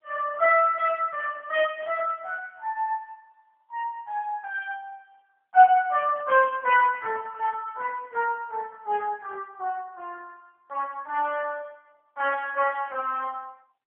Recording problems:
phone line; 300 Hz to 2.9 kHz, AMR-NB

